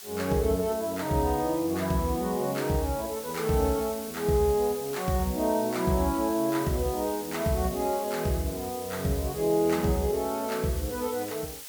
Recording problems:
hiss; slope +2 dB per octave, SNR 12 dB

